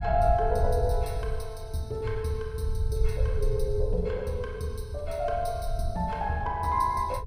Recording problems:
rumble; below 74 Hz, SNR 4 dB

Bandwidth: 15.5 kHz